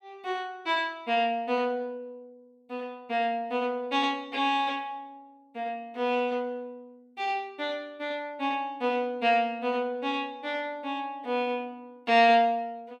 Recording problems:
none

